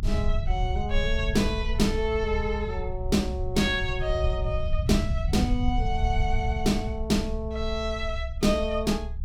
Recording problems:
low-frequency rumble; below 74 Hz, SNR 3 dB

